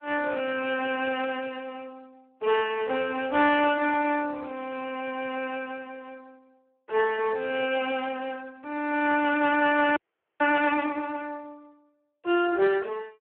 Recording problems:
phone line; 300 Hz to 3.2 kHz, Speex
frozen audio; at 10 s

